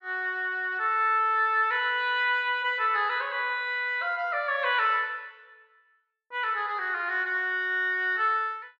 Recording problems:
none

